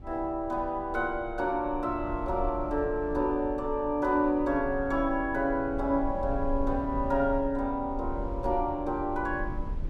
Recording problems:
rumble; below 64 Hz, SNR 12 dB

